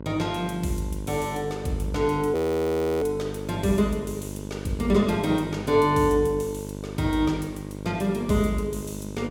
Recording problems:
mains hum; 50 Hz, harmonics up to 1.5 kHz, SNR 10 dB
audio freezing; at 2.5 s for 0.5 s

